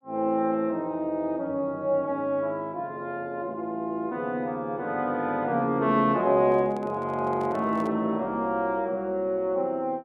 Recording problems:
microphone handling noise; from 6.5 to 8 s; peak -11 dB vs average level

